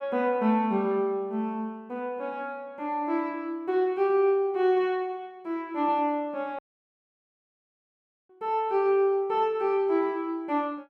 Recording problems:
dropout; at 6.5 s for 1.5 s

